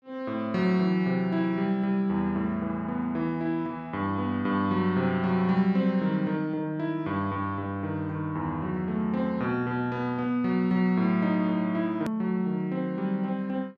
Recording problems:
hard cut with a click; at 12 s

